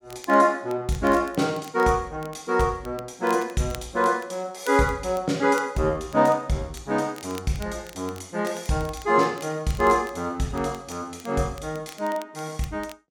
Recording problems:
crackle; vinyl, SNR 23 dB

